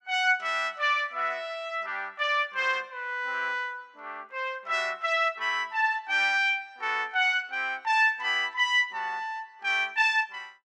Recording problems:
none

